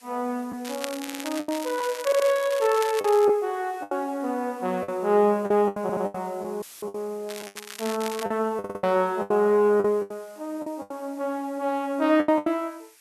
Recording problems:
background hiss; SNR 27 dB
packet loss; 10% of the sound replaced, filled with the last packet
crackling; from 0.5 to 3.5 s and from 7.5 to 8.5 s; loose cable, SNR 12 dB
stutter; 4 times, first at 1 s
dropout; at 6.5 s; filled with static

